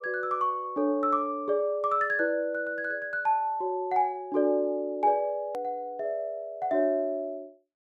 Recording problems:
click at an edit; at 5.5 s

